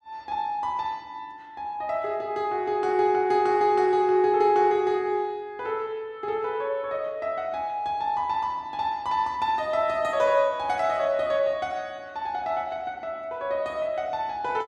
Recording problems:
none

